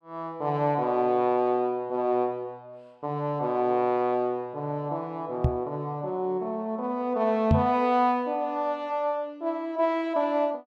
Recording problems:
microphone thump; at 5.5 s and at 7.5 s; peak +8 dB vs average level

